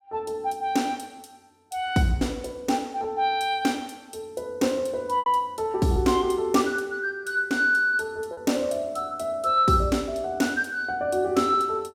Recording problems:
packet loss; 1.7% of the sound replaced, filled with repeated pitch periods

